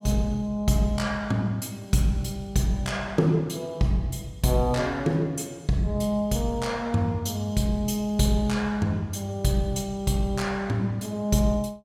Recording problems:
none

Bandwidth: 16.5 kHz